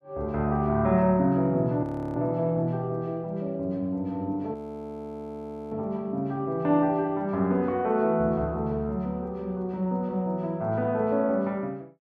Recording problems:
frozen audio; at 2 s and at 4.5 s for 1 s

